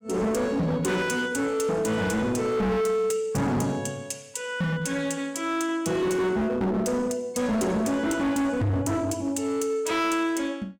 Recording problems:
distorted audio; hard clipping, signal-to-distortion ratio 8 dB

